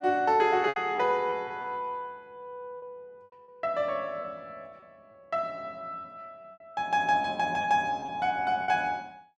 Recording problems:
packet loss; 6% of the sound replaced, filled with repeated pitch periods

